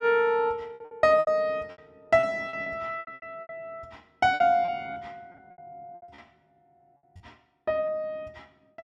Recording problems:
lost packets; 15% of the sound replaced, filled with repeated pitch periods

